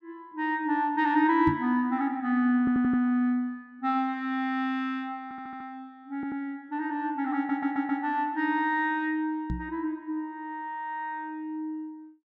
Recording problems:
knock on the microphone; at 1.5 s and at 9.5 s; peak 0 dB vs average level
audio stuttering; 4 times, first at 2.5 s

